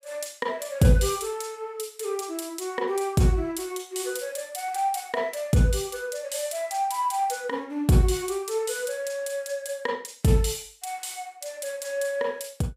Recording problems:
none

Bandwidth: 15.5 kHz